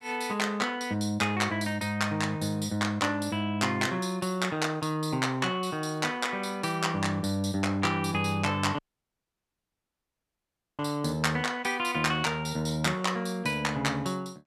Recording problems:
audio cutting out; at 9 s for 2 s

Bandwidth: 14.5 kHz